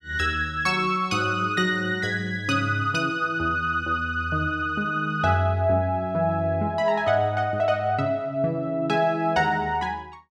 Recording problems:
none

